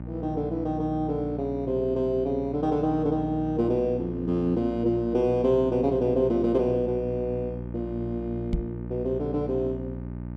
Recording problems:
hum; 60 Hz, harmonics up to 900 Hz, SNR 10 dB
microphone bump; at 8.5 s; peak +3 dB vs average level

